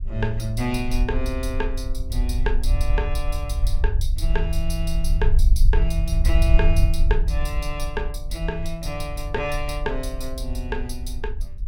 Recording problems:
low-frequency rumble; below 56 Hz, SNR -4 dB

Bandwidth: 17 kHz